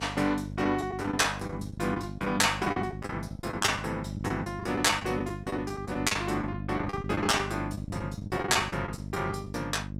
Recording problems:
electrical hum; 50 Hz, harmonics up to 600 Hz, SNR 9 dB
lost packets; 12% of the sound replaced, filled with the last packet

